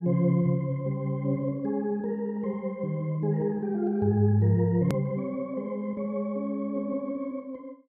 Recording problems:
hard cut with a click; at 5 s

